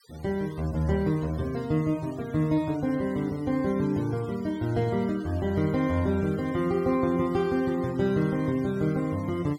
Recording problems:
denoising artefacts; signal-to-artefact ratio 23 dB

